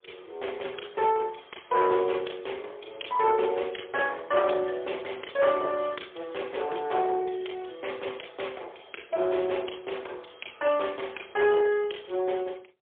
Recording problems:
phone line; 320 Hz to 3.4 kHz, AMR-NB, then MP3
distortion; hard clipping, uneven, signal-to-distortion ratio 13 dB

